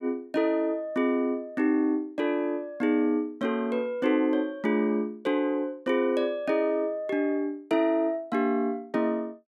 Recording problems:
none

